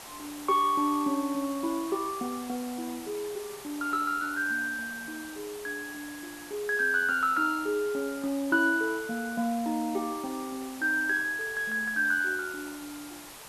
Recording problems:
background hiss; SNR 14 dB

